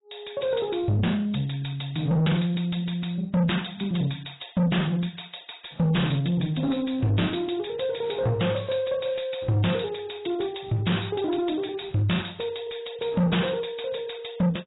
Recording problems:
lossy compression; AAC, log-spectral distance 9 dB, nothing above 3.8 kHz
distortion; soft clipping, signal-to-distortion ratio 7 dB

